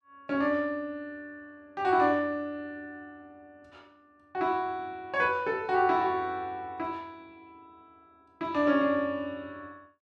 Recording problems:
none

